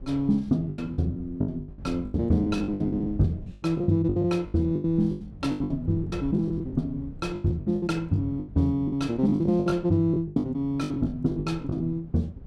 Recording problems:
wind on the microphone; below 140 Hz, SNR 16 dB
packet loss; 19% of the sound replaced, filled with the last packet

